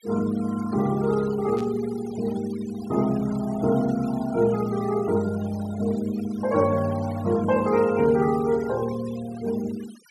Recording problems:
noise reduction artefacts; signal-to-artefact ratio 19 dB
burst of static; at 1.5 s; peak -15 dB vs average level

